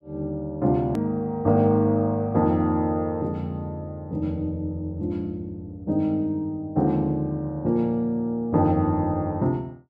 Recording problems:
hard cut with a click; at 1 s

